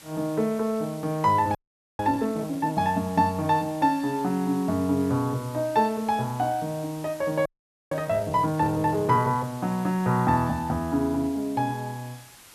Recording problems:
background hiss; slope 0 dB per octave, SNR 21 dB
audio freezing; at 1.5 s and at 7.5 s

